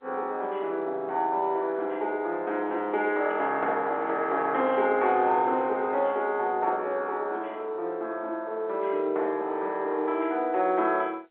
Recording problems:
phone line; 320 Hz to 3.8 kHz, G.711

